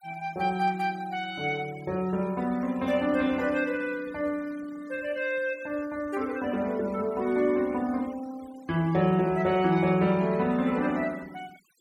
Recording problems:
noise reduction artefacts; signal-to-artefact ratio 22 dB

